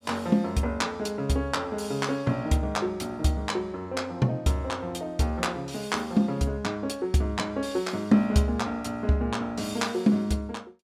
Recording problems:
none

